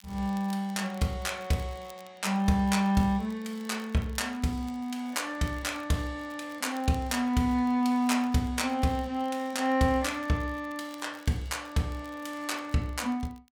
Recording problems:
crackling; vinyl, SNR 26 dB

